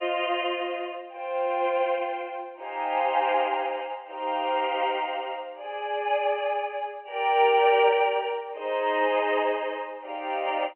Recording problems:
phone line; 320 Hz to 3.1 kHz, G.711

